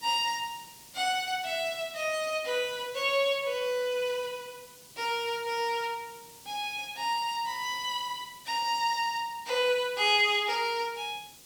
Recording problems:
hiss; SNR 20 dB

